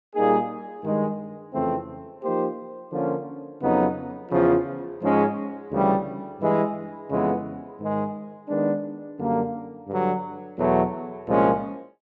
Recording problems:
none

